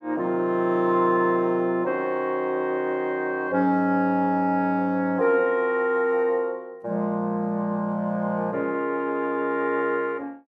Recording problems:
none

